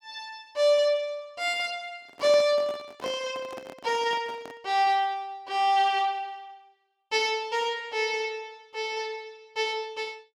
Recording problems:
handling noise; from 2 to 4.5 s; peak -7 dB vs average level

